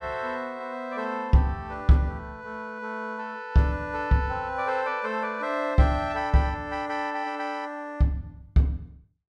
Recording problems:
none

